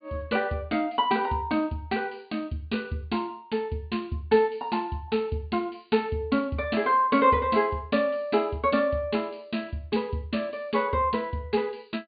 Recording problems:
treble missing; nothing above 4.6 kHz

